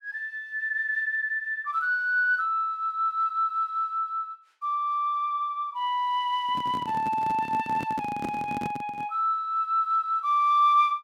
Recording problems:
microphone handling noise; from 6.5 to 9 s; peak -4 dB vs average level

